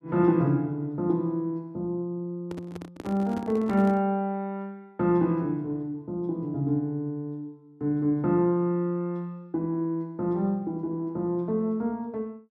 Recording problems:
microphone handling noise; from 2.5 to 4 s; peak -5 dB vs average level

